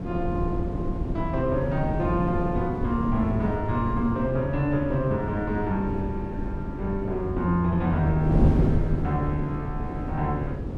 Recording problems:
wind noise; below 270 Hz, SNR 3 dB

